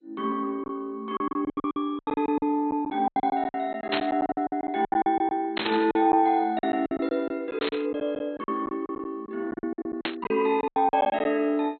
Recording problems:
lossy codec; MP2, log-spectral distance 2 dB, nothing above 3.5 kHz
lost packets; 17% of the sound replaced, filled with silence
burst of static; 4 times, first at 4 s; peak +4 dB vs average level

